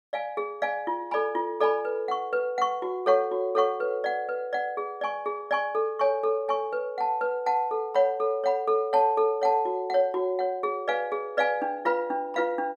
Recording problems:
none

